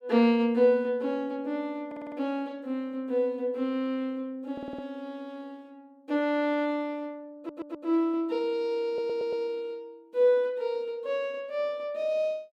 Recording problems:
stutter; 4 times, first at 2 s

